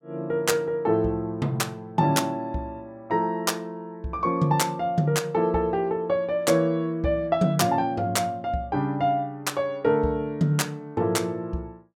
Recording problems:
none

